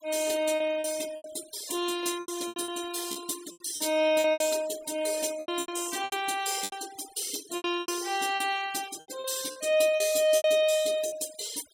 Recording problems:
noise reduction artefacts; signal-to-artefact ratio 16 dB
lost packets; 13% of the sound replaced, filled with repeated pitch periods

